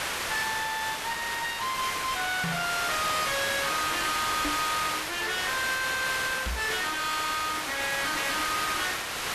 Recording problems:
distortion; hard clipping, signal-to-distortion ratio 7 dB
hiss; SNR 1 dB
microphone thump; at 2.5 s, at 4.5 s and at 6.5 s; peak +3 dB vs average level

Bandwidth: 13.5 kHz